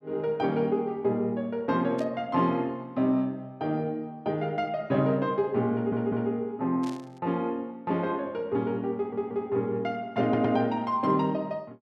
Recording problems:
burst of static; at 2 s and at 7 s; peak -13 dB vs average level
audio stuttering; at 5.5 s, at 9 s and at 10 s

